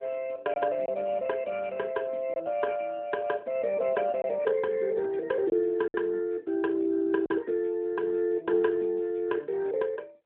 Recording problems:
phone line; 240 Hz to 3.6 kHz, AMR-NB
lost packets; 2% of the sound replaced, filled with silence

